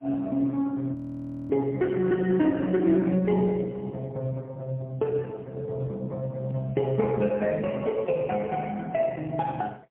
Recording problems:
phone line; 150 Hz to 2.9 kHz, AMR-NB, then MP3
audio freezing; at 1 s for 0.5 s

